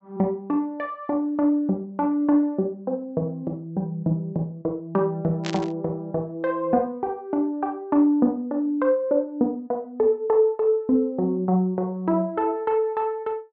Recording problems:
low-pass filter; nothing above 7.9 kHz
static burst; at 5.5 s; peak -4 dB vs average level

